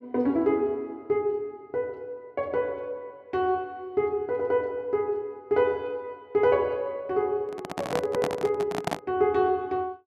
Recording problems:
microphone handling noise; from 7.5 to 9 s; peak +3 dB vs average level

